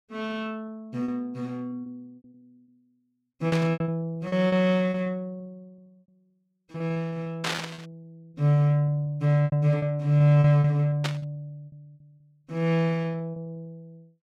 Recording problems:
packet loss; 13% of the sound replaced, filled with repeated pitch periods
burst of static; at 3.5 s, at 7.5 s and at 11 s; peak +1 dB vs average level

